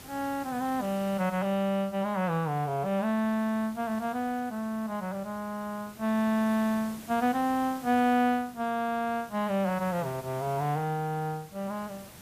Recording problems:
hiss; slope -3 dB per octave, SNR 19 dB

